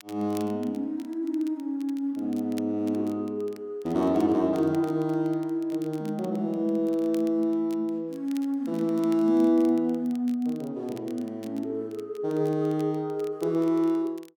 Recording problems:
crackle; vinyl, SNR 26 dB

